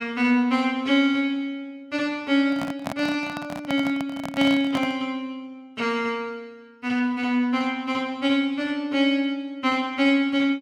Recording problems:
microphone handling noise; from 2.5 to 5 s; peak -2 dB vs average level

